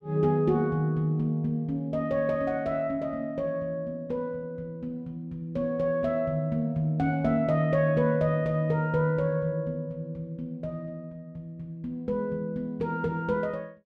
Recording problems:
none

